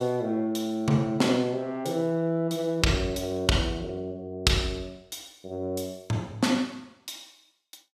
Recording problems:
none

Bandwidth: 15 kHz